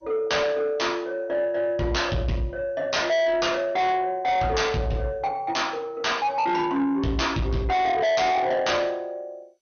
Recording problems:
codec artefacts; MP2, log-spectral distance 2 dB, nothing above 6.3 kHz
distorted audio; soft clipping, signal-to-distortion ratio 7 dB

